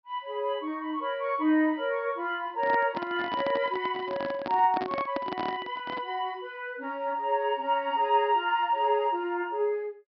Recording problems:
treble cut off; nothing above 5.5 kHz
handling noise; from 2.5 to 6 s; peak -1 dB vs average level

